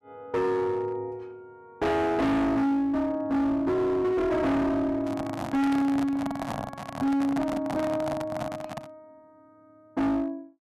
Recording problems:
distorted audio; hard clipping, uneven, signal-to-distortion ratio 6 dB
microphone handling noise; from 5 to 9 s; peak -2 dB vs average level

